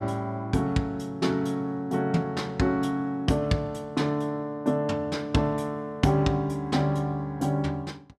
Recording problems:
none

